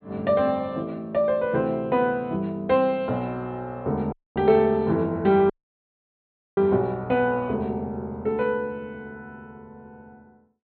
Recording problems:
treble cut off; nothing above 4.4 kHz
audio cutting out; at 4 s and at 5.5 s for 1 s

